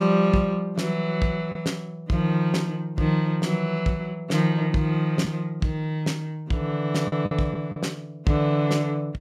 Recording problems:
packet loss; 2% of the sound replaced, filled with the last packet

